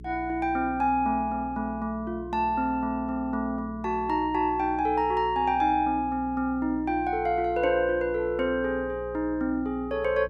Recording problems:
electrical hum; 60 Hz, harmonics up to 420 Hz, SNR 17 dB

